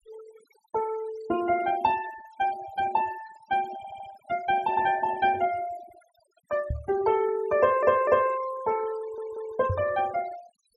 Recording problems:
denoising artefacts; signal-to-artefact ratio 16 dB
stutter; at 4 s, at 7.5 s and at 9 s
microphone thump; at 6.5 s and at 9.5 s; peak +1 dB vs average level

